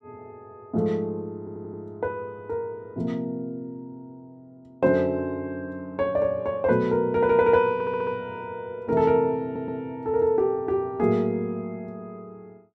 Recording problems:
stutter; at 1.5 s, at 7.5 s and at 9.5 s

